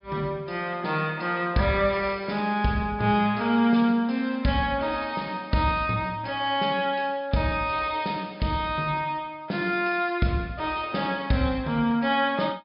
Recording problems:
treble cut off; nothing above 5.5 kHz

